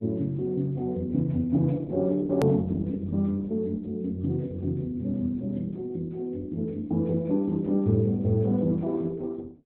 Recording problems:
lossy compression; Opus, log-spectral distance 2 dB, nothing above 13.1 kHz
edit click; at 2.5 s

